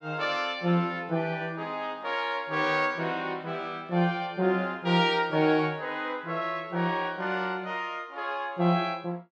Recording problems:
none

